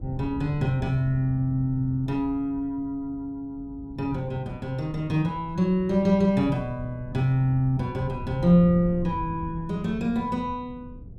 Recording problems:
wind on the microphone; below 150 Hz, SNR 14 dB

